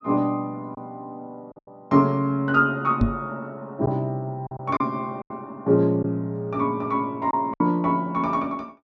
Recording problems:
low-pass filter; nothing above 8 kHz
packet loss; 5% of the sound replaced, filled with silence
microphone thump; at 3 s; peak +7 dB vs average level

